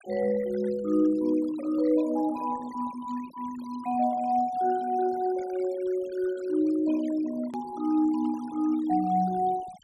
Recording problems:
noise reduction artefacts; signal-to-artefact ratio 21 dB
click at an edit; at 7.5 s

